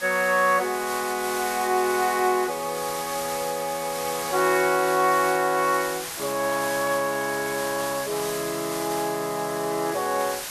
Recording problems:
hiss; slope +1 dB per octave, SNR 8 dB

